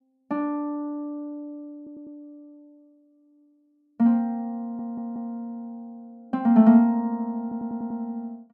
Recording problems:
audio stuttering; at 2 s, at 4.5 s and at 7.5 s

